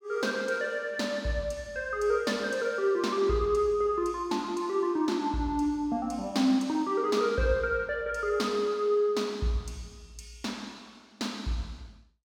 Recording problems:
none

